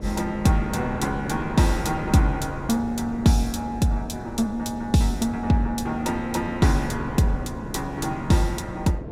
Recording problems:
wind noise; below 390 Hz, SNR 11 dB

